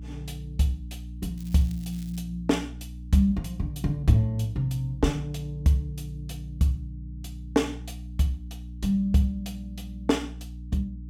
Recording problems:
electrical hum; 60 Hz, harmonics up to 300 Hz, SNR 12 dB
crackling; at 1.5 s; loose cable, SNR 24 dB

